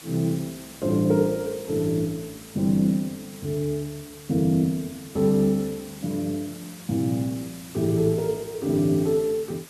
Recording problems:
background hiss; slope -1 dB per octave, SNR 18 dB

